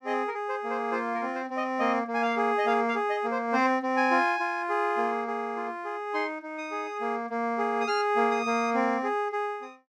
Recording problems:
none

